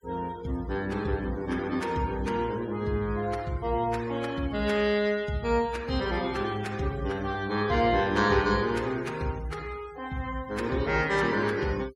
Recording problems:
noise reduction artefacts; signal-to-artefact ratio 21 dB

